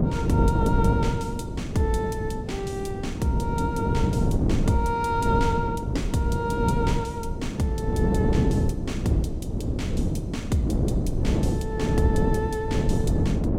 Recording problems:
wind noise; below 250 Hz, SNR -3 dB

